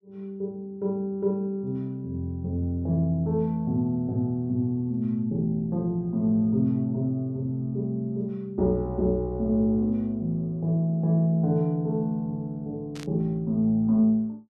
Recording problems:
burst of static; at 13 s; peak -12 dB vs average level

